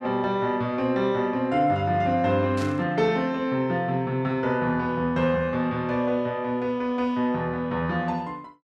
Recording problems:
burst of static; at 2.5 s; peak -10 dB vs average level

